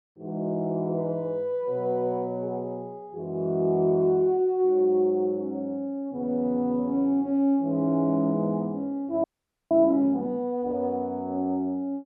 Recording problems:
audio freezing; at 9 s

